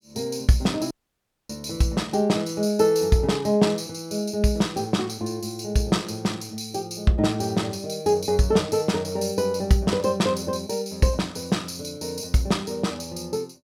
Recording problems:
audio cutting out; at 1 s for 0.5 s

